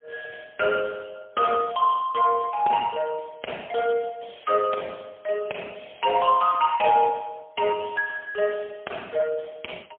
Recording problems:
telephone audio; 280 Hz to 3.2 kHz, AMR-NB, then MP3

